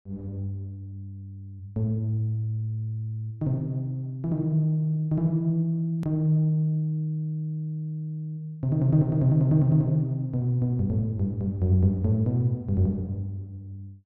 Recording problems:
edit click; at 6 s

